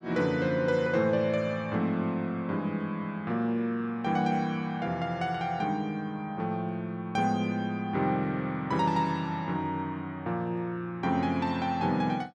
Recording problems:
none

